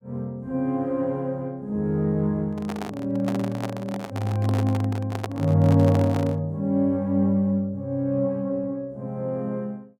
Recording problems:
microphone handling noise; from 2.5 to 6.5 s; peak -2 dB vs average level

